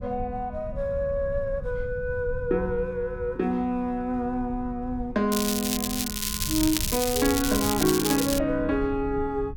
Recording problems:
rumble; below 100 Hz, SNR 12 dB
crackle; from 5.5 to 8.5 s; loose cable, SNR 1 dB

